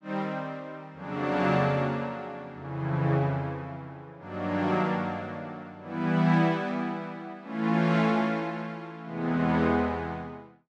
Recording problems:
none

